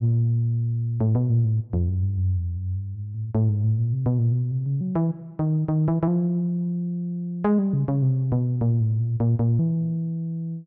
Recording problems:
none

